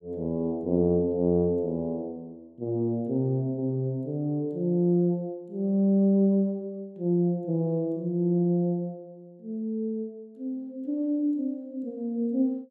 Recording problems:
none

